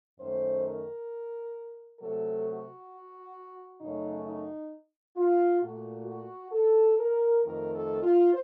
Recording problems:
none

